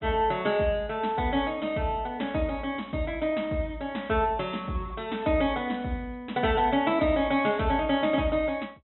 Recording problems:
treble missing; nothing above 4 kHz

